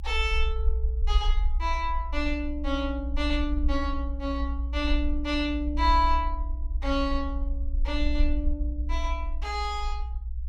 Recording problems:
low-frequency rumble; below 60 Hz, SNR 1 dB

